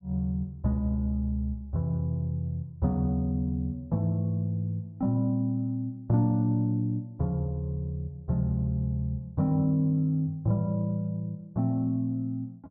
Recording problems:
none

